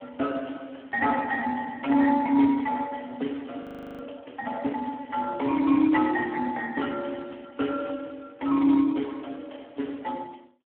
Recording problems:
telephone audio; 240 Hz to 3 kHz, Speex
frozen audio; at 3.5 s

